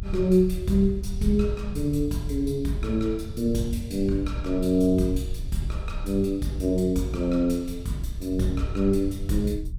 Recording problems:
rumble; below 82 Hz, SNR 11 dB

